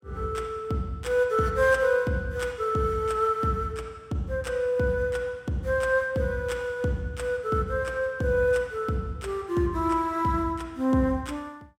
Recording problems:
none

